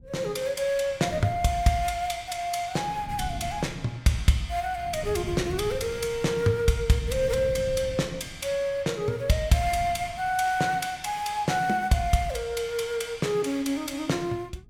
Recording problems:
wind on the microphone; below 160 Hz, SNR 13 dB

